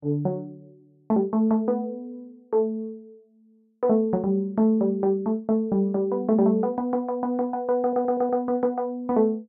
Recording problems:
audio stuttering; at 8 s

